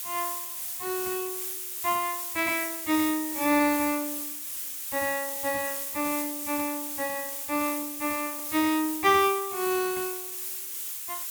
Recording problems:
hiss; slope +3 dB per octave, SNR 3 dB

